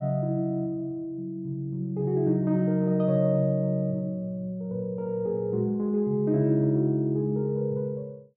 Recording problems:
none

